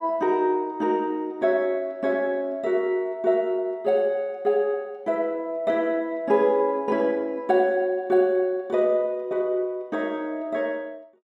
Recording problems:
none

